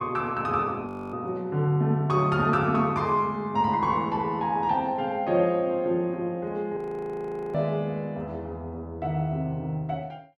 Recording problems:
frozen audio; at 1 s and at 7 s for 1 s

